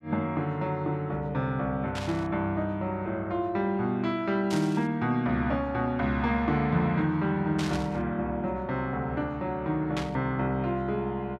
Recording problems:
static burst; 4 times, first at 2 s; peak -3 dB vs average level

